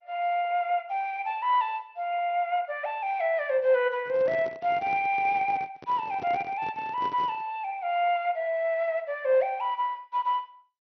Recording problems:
lossy codec; MP2, log-spectral distance 2 dB
microphone handling noise; from 4 to 7.5 s; peak -9 dB vs average level

